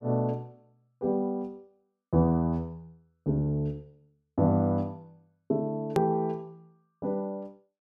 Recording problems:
edit click; at 6 s

